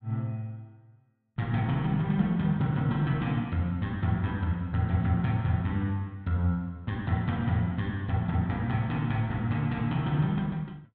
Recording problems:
none

